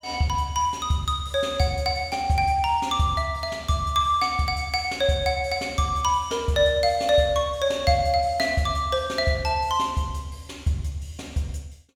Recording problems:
none

